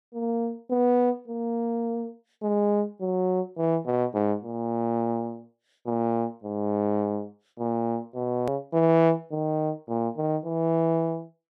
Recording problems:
edit click; at 8.5 s

